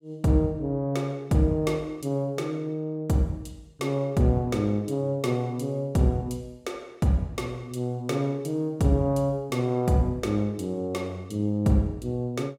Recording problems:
none

